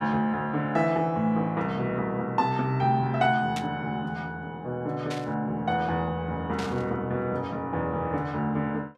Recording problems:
burst of static; at 3.5 s, at 5 s and at 6.5 s; peak -4 dB vs average level

